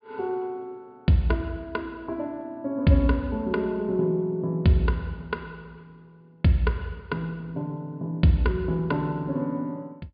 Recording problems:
treble cut off; nothing above 4.9 kHz

